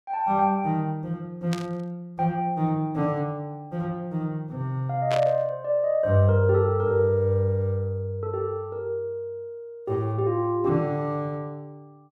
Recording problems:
static burst; at 1.5 s and at 5 s; peak -3 dB vs average level

